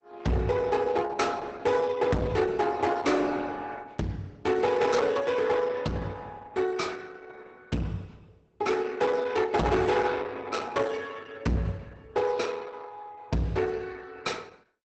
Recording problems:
lossy compression; Opus, log-spectral distance 4 dB, nothing above 8 kHz
distortion; hard clipping, uneven, signal-to-distortion ratio 7 dB

